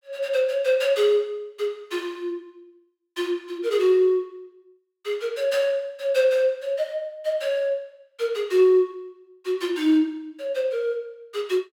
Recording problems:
none

